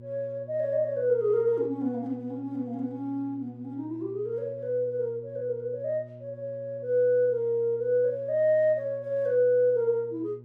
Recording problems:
electrical hum; 60 Hz, harmonics up to 600 Hz, SNR 19 dB

